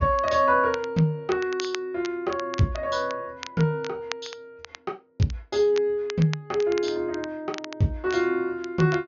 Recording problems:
low-pass filter; nothing above 6.7 kHz
crackling; vinyl, SNR 16 dB

